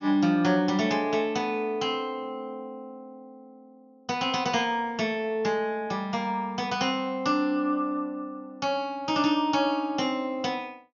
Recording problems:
treble missing; nothing above 6.7 kHz

